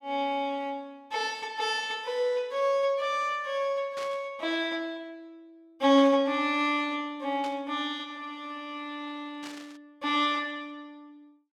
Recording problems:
burst of static; 4 times, first at 4 s; peak -9 dB vs average level

